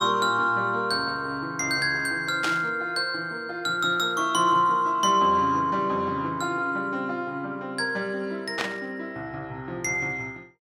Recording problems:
static burst; at 2.5 s and at 8.5 s; peak +1 dB vs average level

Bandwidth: 17.5 kHz